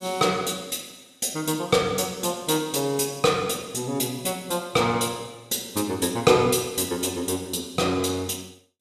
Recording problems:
none

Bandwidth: 14.5 kHz